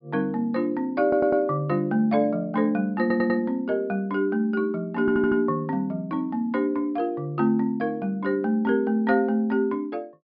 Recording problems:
low-pass filter; nothing above 5.5 kHz
audio stuttering; at 1 s, at 3 s and at 5 s

